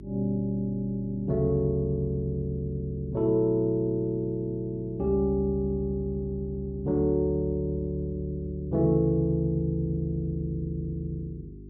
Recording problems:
hum; 50 Hz, harmonics up to 400 Hz, SNR 17 dB

